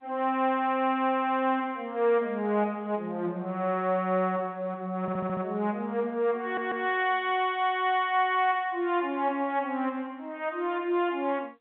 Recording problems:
phone line; 220 Hz to 3.7 kHz, G.711
stutter; at 5 s and at 6.5 s

